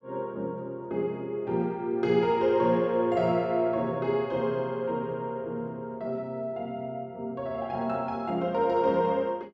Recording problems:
none

